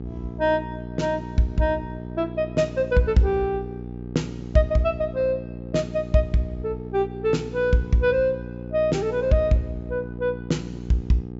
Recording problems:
low-pass filter; nothing above 7.5 kHz
electrical hum; 60 Hz, harmonics up to 840 Hz, SNR 11 dB

